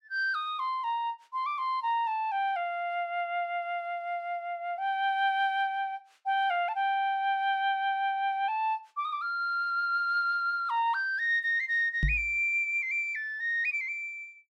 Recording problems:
knock on the microphone; at 12 s; peak +4 dB vs average level

